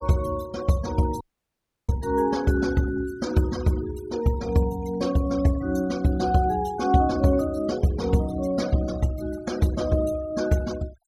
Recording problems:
denoising artefacts; signal-to-artefact ratio 18 dB
audio cutting out; at 1 s for 0.5 s

